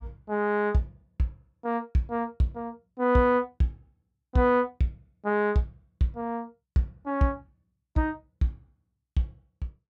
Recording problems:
none

